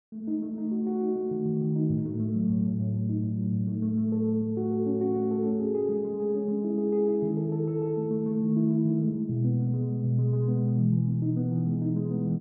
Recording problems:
none

